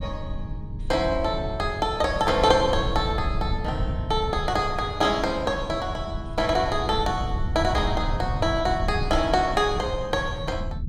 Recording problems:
rumble; below 120 Hz, SNR 7 dB

